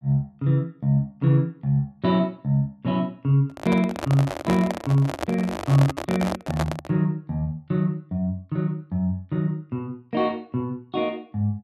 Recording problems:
handling noise; from 3.5 to 7 s; peak +1 dB vs average level

